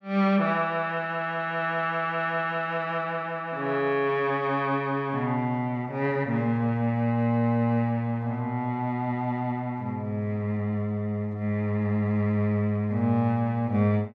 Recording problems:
none

